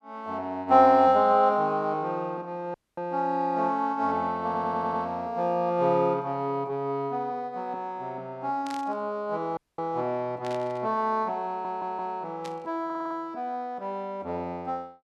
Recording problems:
audio cutting out; at 2.5 s and at 9.5 s
audio stuttering; at 4.5 s, at 11 s and at 13 s
static burst; at 8.5 s, at 10 s and at 12 s; peak -10 dB vs average level

